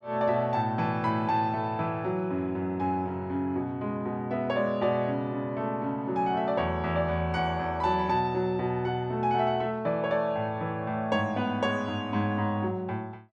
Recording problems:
none

